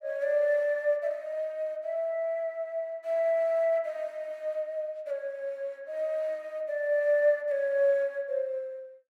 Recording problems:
none

